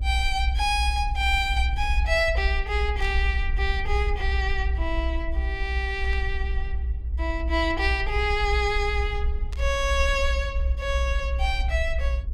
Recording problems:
low-frequency rumble; below 62 Hz, SNR 2 dB
burst of static; at 3 s, at 6 s and at 9.5 s; peak -12 dB vs average level

